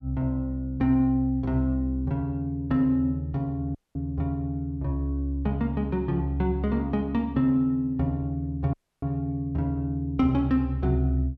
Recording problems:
audio cutting out; at 4 s and at 8.5 s

